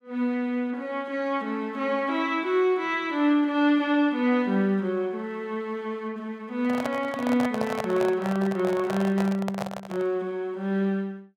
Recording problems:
handling noise; from 6.5 to 10 s; peak 0 dB vs average level

